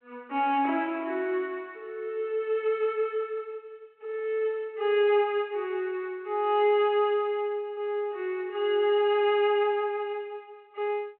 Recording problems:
phone line; 220 Hz to 3.3 kHz, G.726

